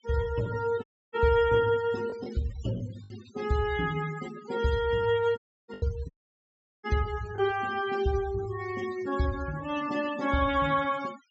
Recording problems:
treble missing; nothing above 7.7 kHz
noise reduction artefacts; signal-to-artefact ratio 16 dB
packet loss; 2% of the sound replaced, filled with the last packet
audio cutting out; at 1 s, at 5.5 s and at 6 s for 0.5 s

